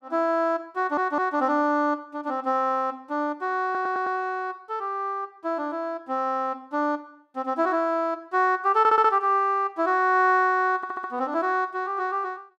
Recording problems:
audio stuttering; 4 times, first at 1 s

